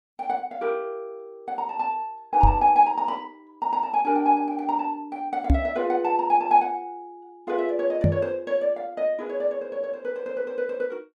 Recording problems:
knock on the microphone; at 2.5 s, at 5.5 s and at 8 s; peak +8 dB vs average level

